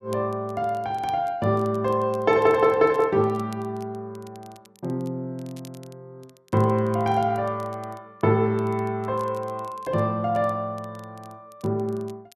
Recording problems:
crackle; vinyl, SNR 29 dB

